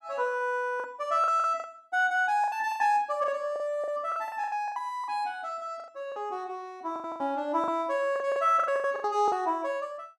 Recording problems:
lost packets; 14% of the sound replaced, filled with the last packet

